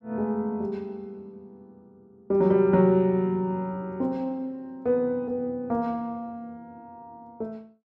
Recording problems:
none

